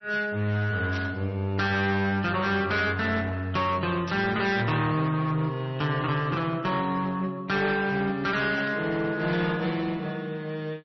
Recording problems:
codec artefacts; MP3, log-spectral distance 2 dB, nothing above 5.7 kHz
distorted audio; hard clipping, uneven, signal-to-distortion ratio 10 dB
static burst; at 1 s, at 4 s and at 8.5 s; peak -8 dB vs average level

